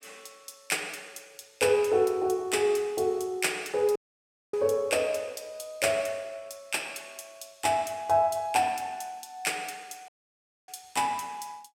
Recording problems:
dropout; at 4 s for 0.5 s and at 10 s for 0.5 s

